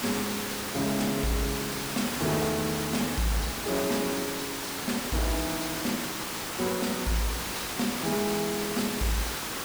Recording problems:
distorted audio; hard clipping, signal-to-distortion ratio 11 dB
hiss; slope -2 dB per octave, SNR 1 dB

